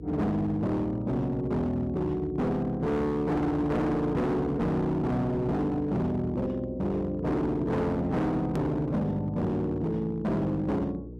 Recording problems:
distortion; hard clipping, signal-to-distortion ratio 7 dB
mains hum; 60 Hz, harmonics up to 480 Hz, SNR 15 dB
hard cut with a click; at 8.5 s

